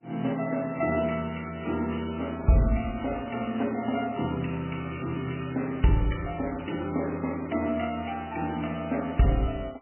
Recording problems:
lossy codec; MP3, log-spectral distance 7 dB, nothing above 2.5 kHz

